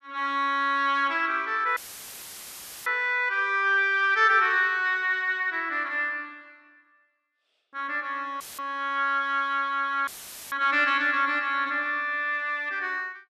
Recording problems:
audio cutting out; at 2 s for 1 s, at 8.5 s and at 10 s; filled with static

